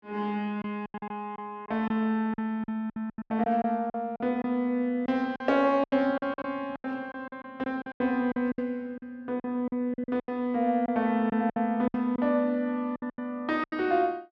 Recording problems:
lost packets; 14% of the sound replaced, filled with silence

